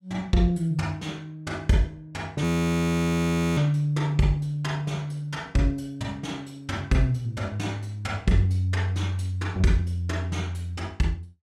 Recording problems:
frozen audio; at 2.5 s for 1 s

